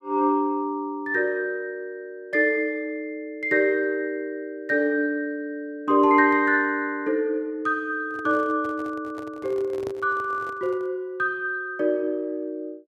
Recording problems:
handling noise; from 8 to 11 s; peak -6 dB vs average level

